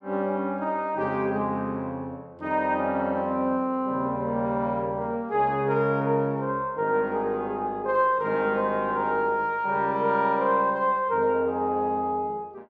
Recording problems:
none

